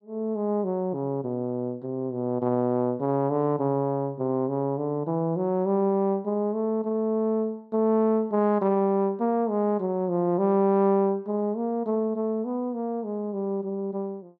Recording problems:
none

